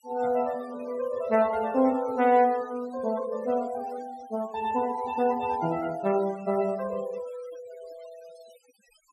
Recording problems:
noise reduction artefacts; signal-to-artefact ratio 18 dB

